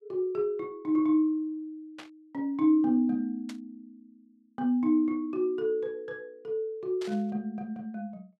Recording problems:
burst of static; at 2 s, at 3.5 s and at 7 s; peak -11 dB vs average level

